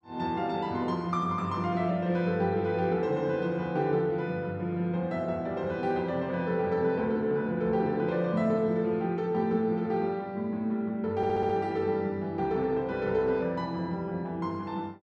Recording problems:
audio stuttering; at 11 s

